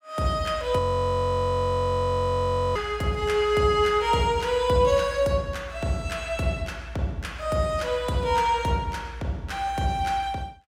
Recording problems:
frozen audio; at 1 s for 2 s

